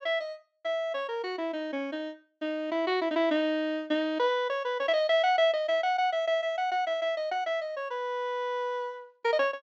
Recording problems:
treble cut off; nothing above 8 kHz

